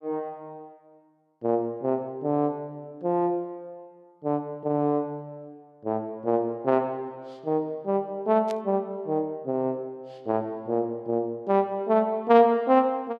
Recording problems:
burst of static; at 8.5 s; peak -12 dB vs average level

